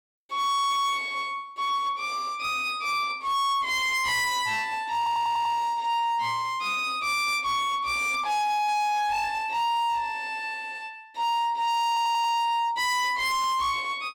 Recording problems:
distortion; hard clipping, uneven, signal-to-distortion ratio 7 dB
stutter; at 5 s and at 12 s

